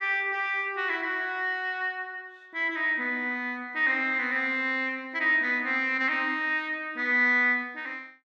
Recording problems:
none

